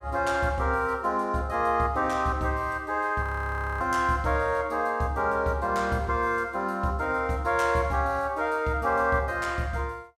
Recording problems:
frozen audio; at 3 s for 0.5 s

